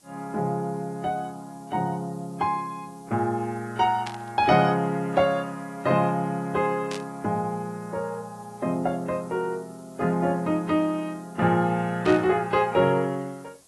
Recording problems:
codec artefacts; AAC, log-spectral distance 4 dB
background hiss; SNR 28 dB
static burst; at 4 s, at 7 s and at 12 s; peak -5 dB vs average level

